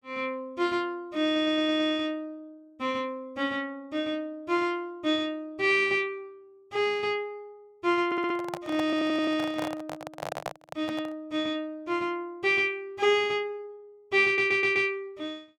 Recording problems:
audio stuttering; 4 times, first at 1.5 s
microphone handling noise; from 8 to 11 s; peak -1 dB vs average level

